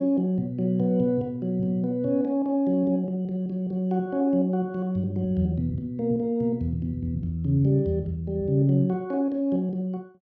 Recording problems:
none

